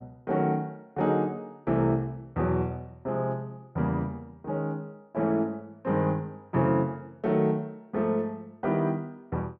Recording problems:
none

